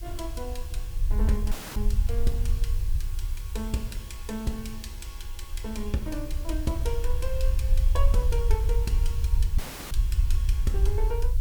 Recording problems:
hiss; slope +1 dB per octave, SNR 14 dB
rumble; below 60 Hz, SNR -6 dB
audio cutting out; at 1.5 s and at 9.5 s

